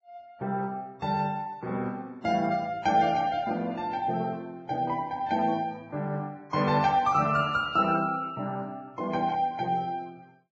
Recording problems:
codec artefacts; Vorbis, log-spectral distance 2 dB, nothing above 7.3 kHz

